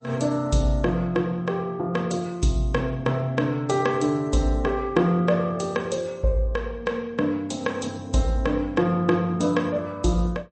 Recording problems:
codec artefacts; MP3, log-spectral distance 2 dB, nothing above 8.2 kHz

